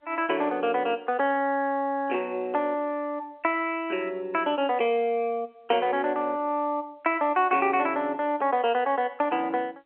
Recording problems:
phone line; 300 Hz to 3.2 kHz, G.711

